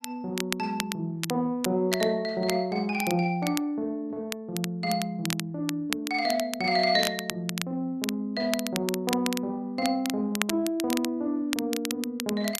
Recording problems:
crackling; vinyl, SNR 7 dB

